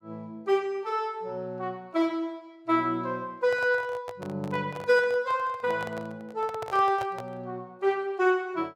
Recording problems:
handling noise; from 3.5 to 7.5 s; peak -5 dB vs average level

